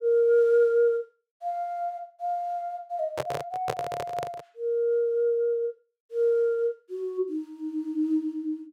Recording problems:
handling noise; from 3 to 4.5 s; peak +1 dB vs average level

